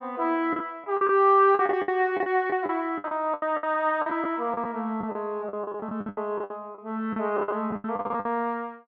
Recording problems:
packet loss; 17% of the sound replaced, filled with the last packet

